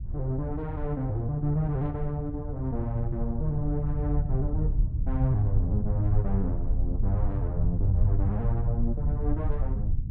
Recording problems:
rumble; below 86 Hz, SNR 0 dB

